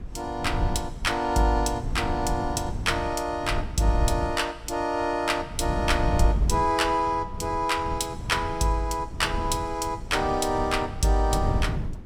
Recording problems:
wind on the microphone; below 130 Hz, SNR 7 dB

